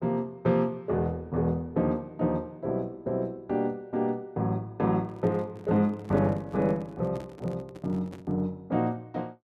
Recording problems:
microphone handling noise; from 5 to 8.5 s; peak -9 dB vs average level

